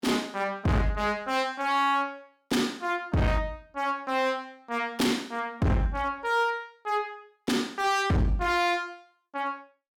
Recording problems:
distortion; hard clipping, signal-to-distortion ratio 8 dB

